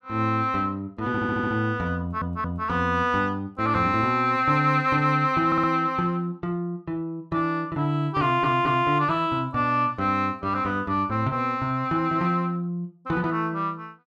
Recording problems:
audio stuttering; 4 times, first at 1 s

